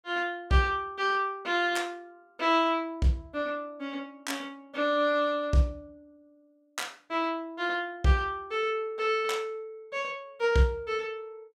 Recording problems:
none

